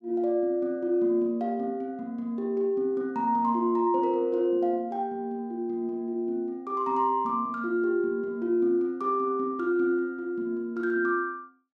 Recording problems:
none

